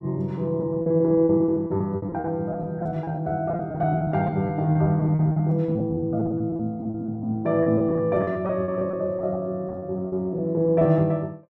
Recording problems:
packet loss; 16% of the sound replaced, filled with repeated pitch periods

